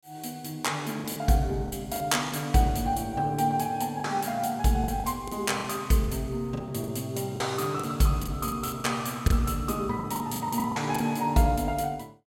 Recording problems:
packet loss; 9% of the sound replaced, filled with the last packet

